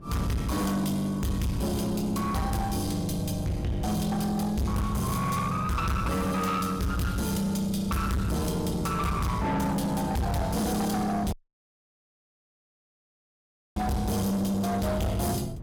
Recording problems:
distortion; soft clipping, signal-to-distortion ratio 8 dB
wind on the microphone; below 240 Hz, SNR 14 dB
dropout; at 11 s for 2.5 s

